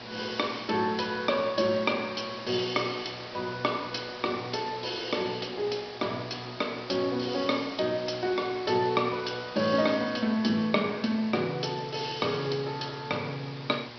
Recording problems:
low-pass filter; nothing above 5.5 kHz
hum; 60 Hz, harmonics up to 2.8 kHz, SNR 21 dB
background hiss; SNR 13 dB

